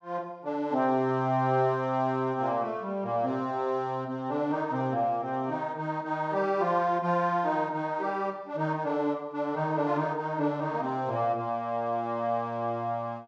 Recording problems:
none

